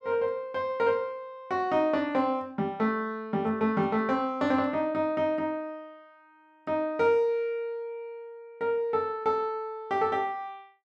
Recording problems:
none

